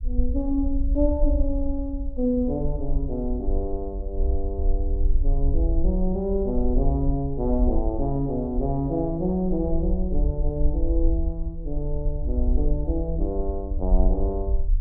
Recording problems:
rumble; below 54 Hz, SNR 0 dB

